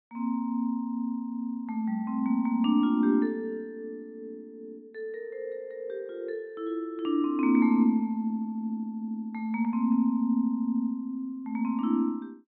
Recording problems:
low-pass filter; nothing above 4 kHz

